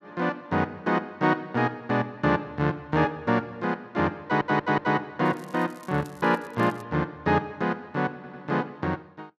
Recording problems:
stutter; at 4 s and at 8 s
crackle; from 5 to 7 s; loose cable, SNR 28 dB

